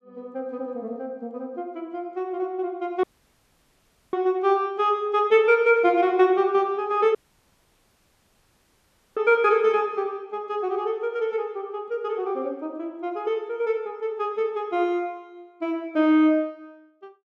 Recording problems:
audio cutting out; at 3 s for 1 s and at 7 s for 2 s

